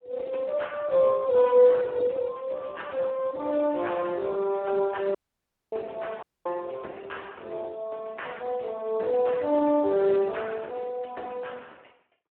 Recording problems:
telephone audio; 260 Hz to 3.1 kHz, Speex
audio cutting out; at 5 s for 0.5 s and at 6 s

